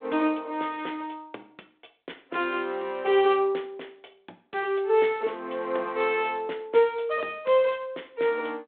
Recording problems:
telephone audio; 280 Hz to 3.7 kHz, G.726

